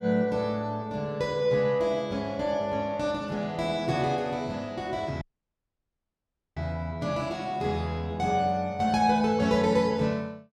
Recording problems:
dropout; at 5 s for 1.5 s

